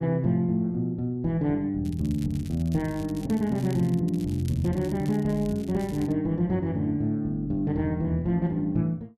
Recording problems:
crackling; from 2 to 6 s; loose cable, SNR 23 dB

